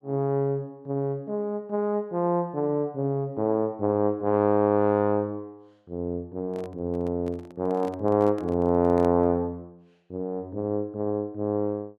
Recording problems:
handling noise; from 6.5 to 9.5 s; peak -9 dB vs average level

